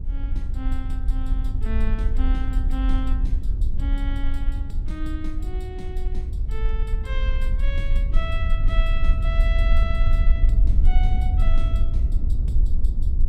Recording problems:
low-frequency rumble; below 52 Hz, strongest tone 20 Hz, SNR -11 dB

